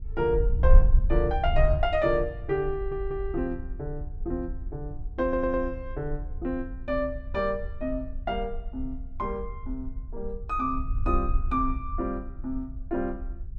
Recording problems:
wind on the microphone; below 56 Hz, SNR 2 dB
stutter; at 2.5 s and at 5 s

